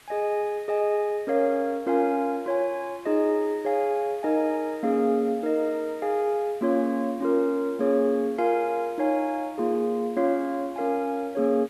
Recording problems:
hiss; SNR 26 dB

